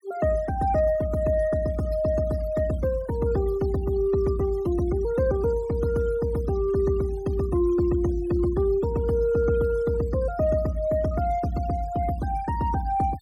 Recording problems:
denoising artefacts; signal-to-artefact ratio 20 dB

